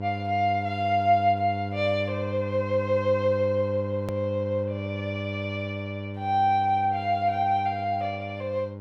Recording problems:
electrical hum; 50 Hz, harmonics up to 1 kHz, SNR 8 dB
edit click; at 4 s

